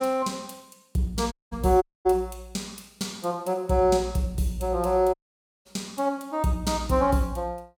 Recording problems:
audio cutting out; at 1.5 s, at 2 s and at 5 s for 0.5 s

